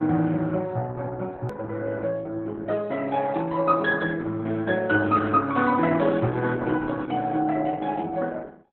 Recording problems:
lossy compression; Opus, log-spectral distance 3 dB
click at an edit; at 1.5 s

